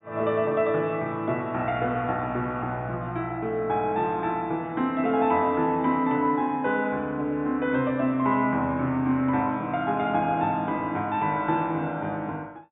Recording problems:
treble cut off; nothing above 4 kHz

